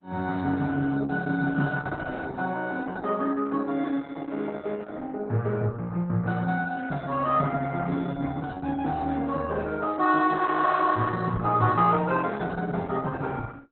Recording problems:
codec artefacts; Opus, log-spectral distance 4 dB, nothing above 4 kHz

